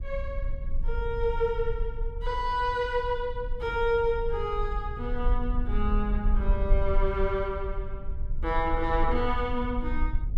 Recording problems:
low-frequency rumble; below 46 Hz, SNR 3 dB

